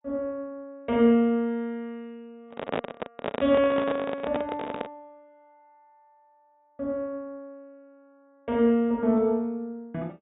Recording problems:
treble cut off; nothing above 4 kHz
microphone handling noise; from 2.5 to 5 s; peak +1 dB vs average level

